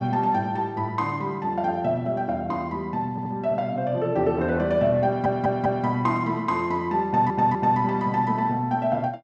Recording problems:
audio stuttering; at 3 s, at 5 s and at 7 s

